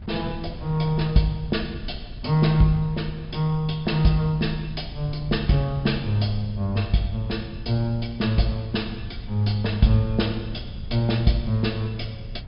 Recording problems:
treble cut off; nothing above 5.5 kHz
low-frequency rumble; below 110 Hz, SNR 14 dB
wind noise; below 84 Hz, SNR 22 dB

